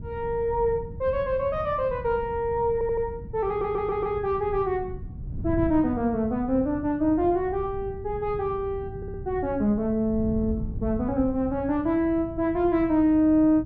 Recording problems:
wind noise; below 140 Hz, SNR 12 dB
audio stuttering; at 2.5 s, at 3.5 s and at 9 s

